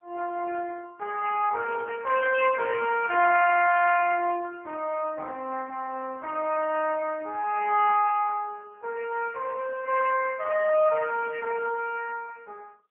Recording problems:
telephone audio; 280 Hz to 3.1 kHz, AMR-NB, then MP3

